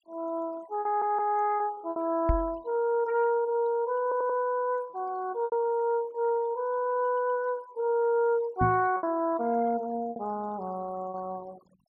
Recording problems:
noise reduction artefacts; signal-to-artefact ratio 24 dB
packet loss; 4% of the sound replaced, filled with repeated pitch periods
stutter; at 1 s and at 4 s
knock on the microphone; at 2.5 s and at 8.5 s; peak +4 dB vs average level

